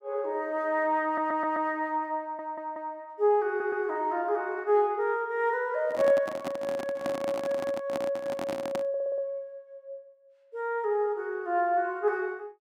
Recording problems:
audio stuttering; 4 times, first at 1 s
handling noise; from 6 to 9 s; peak -2 dB vs average level

